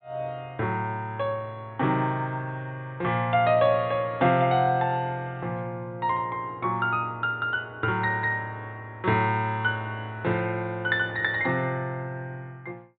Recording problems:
treble cut off; nothing above 4 kHz

